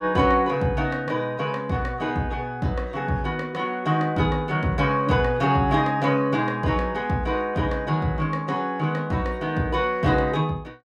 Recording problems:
none

